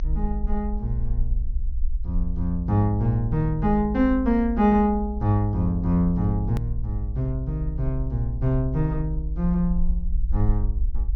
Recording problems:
treble missing; nothing above 6.4 kHz
rumble; below 58 Hz, SNR 6 dB
hard cut with a click; at 6.5 s

